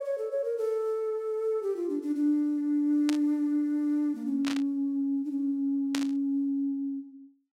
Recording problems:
burst of static; at 3 s, at 4.5 s and at 6 s; peak -1 dB vs average level

